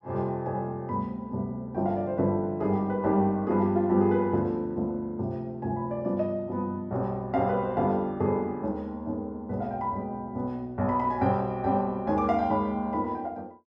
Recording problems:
none

